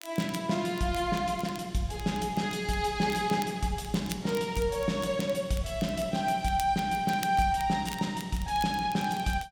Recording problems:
crackle; vinyl, SNR 18 dB

